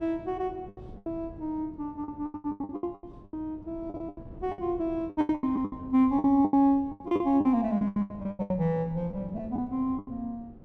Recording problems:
wind on the microphone; below 290 Hz, SNR 19 dB
lost packets; 20% of the sound replaced, filled with the last packet

